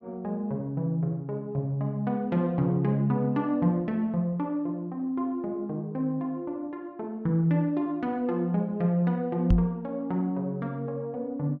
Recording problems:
microphone thump; at 9.5 s; peak +7 dB vs average level

